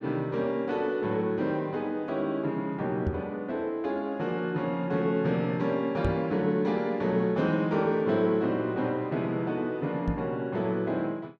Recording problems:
microphone thump; at 3 s, at 6 s and at 10 s; peak +2 dB vs average level

